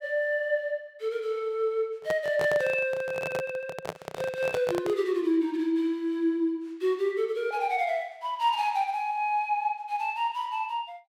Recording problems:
handling noise; from 2 to 5 s; peak 0 dB vs average level

